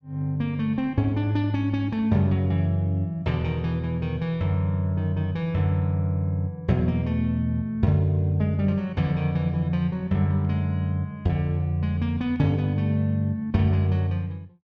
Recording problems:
none

